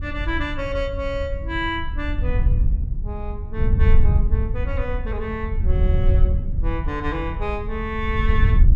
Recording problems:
wind on the microphone; below 76 Hz, SNR -4 dB

